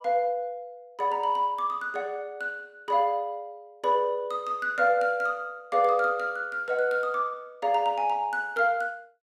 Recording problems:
none

